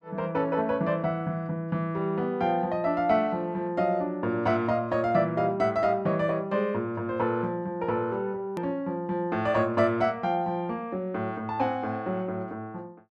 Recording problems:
edit click; at 8.5 s

